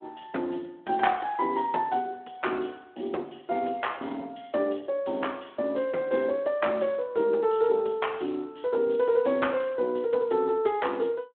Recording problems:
phone line; 260 Hz to 3.3 kHz, Speex

